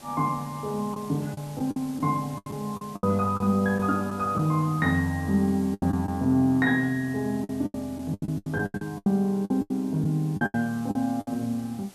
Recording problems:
hiss; slope -3 dB per octave, SNR 22 dB
packet loss; 12% of the sound replaced, filled with the last packet

